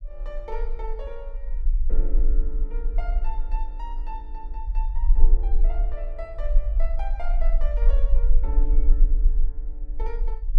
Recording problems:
rumble; below 36 Hz, strongest tone 20 Hz, SNR -13 dB

